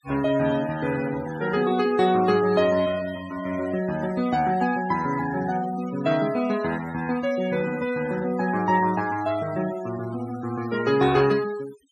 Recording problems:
noise reduction artefacts; signal-to-artefact ratio 16 dB

